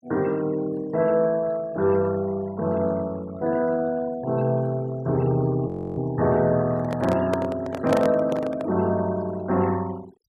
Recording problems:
denoising artefacts; signal-to-artefact ratio 22 dB
frozen audio; at 5.5 s
handling noise; from 6.5 to 8.5 s; peak +3 dB vs average level

